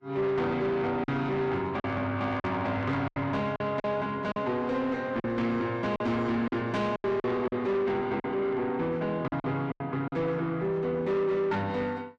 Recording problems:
codec artefacts; Vorbis, log-spectral distance 2 dB
distortion; soft clipping, signal-to-distortion ratio 11 dB
packet loss; 7% of the sound replaced, filled with silence

